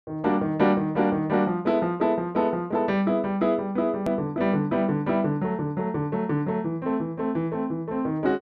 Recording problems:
hard cut with a click; at 4 s

